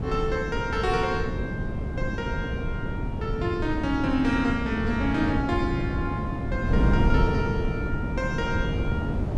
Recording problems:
wind on the microphone; below 230 Hz, SNR 0 dB

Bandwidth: 12 kHz